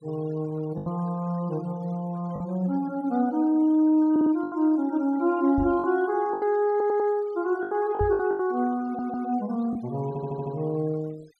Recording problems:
noise reduction artefacts; signal-to-artefact ratio 26 dB
lost packets; 6% of the sound replaced, filled with the last packet
audio stuttering; 4 times, first at 4 s
microphone thump; at 5.5 s and at 8 s; peak -1 dB vs average level

